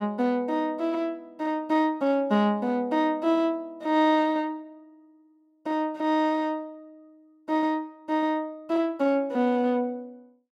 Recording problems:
none

